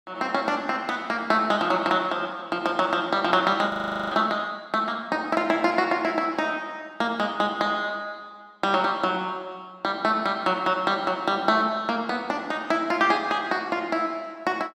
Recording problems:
audio freezing; at 3.5 s

